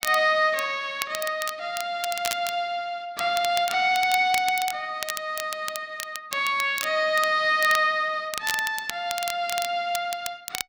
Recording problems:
crackling; vinyl, SNR 10 dB

